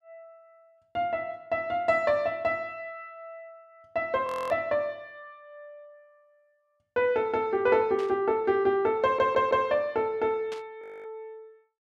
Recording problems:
frozen audio; at 4.5 s and at 11 s
burst of static; at 8 s and at 11 s; peak -11 dB vs average level
stutter; at 9 s

